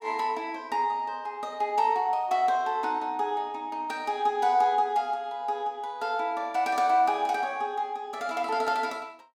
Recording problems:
none

